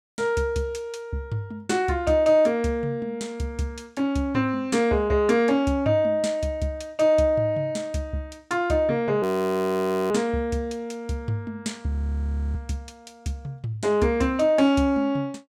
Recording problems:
frozen audio; at 9 s for 1 s and at 12 s for 0.5 s

